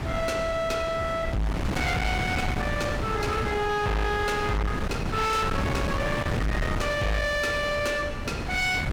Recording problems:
distortion; hard clipping, uneven, signal-to-distortion ratio 6 dB
wind noise; below 820 Hz, SNR 4 dB

